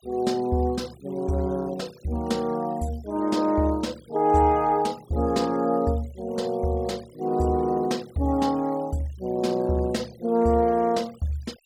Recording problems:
denoising artefacts; signal-to-artefact ratio 25 dB

